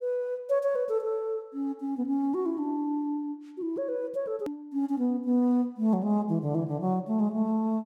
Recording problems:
click at an edit; at 4.5 s

